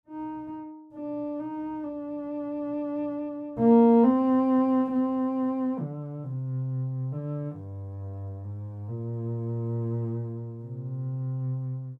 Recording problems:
none

